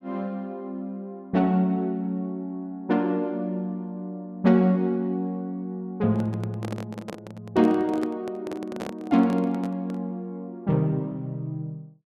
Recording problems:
handling noise; from 6 to 10 s; peak -4 dB vs average level

